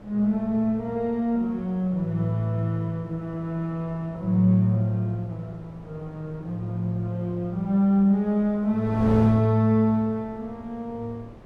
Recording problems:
wind on the microphone; below 510 Hz, SNR 18 dB

